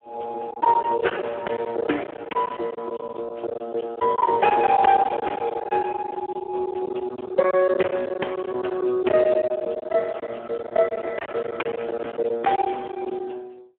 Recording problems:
phone line; 280 Hz to 3.2 kHz, Speex
lost packets; 14% of the sound replaced, filled with silence

